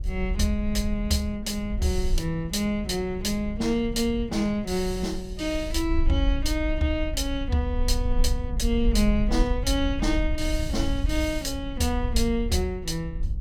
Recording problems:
rumble; below 150 Hz, SNR 14 dB
wind on the microphone; below 60 Hz, SNR 4 dB

